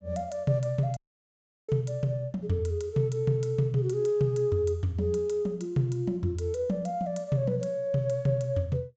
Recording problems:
treble cut off; nothing above 8 kHz
audio cutting out; at 1 s for 0.5 s

